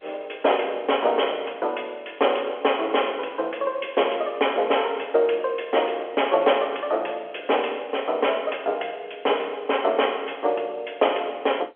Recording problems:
phone line; 340 Hz to 3.3 kHz, G.711

